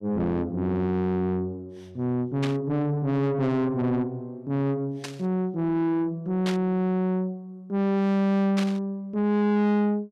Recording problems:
distorted audio; soft clipping, signal-to-distortion ratio 6 dB
static burst; 4 times, first at 2.5 s; peak -3 dB vs average level

